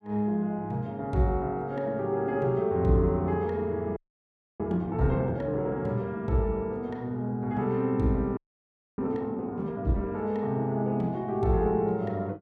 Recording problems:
audio freezing; at 4 s for 0.5 s and at 8.5 s for 0.5 s

